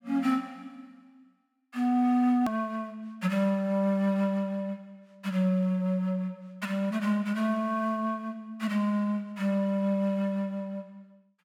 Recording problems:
click at an edit; at 2.5 s

